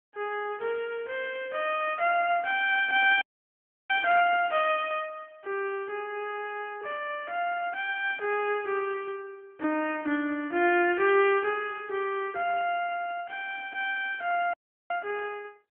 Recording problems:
telephone audio; 240 Hz to 3.3 kHz, AMR-NB
audio cutting out; at 3 s for 0.5 s and at 15 s

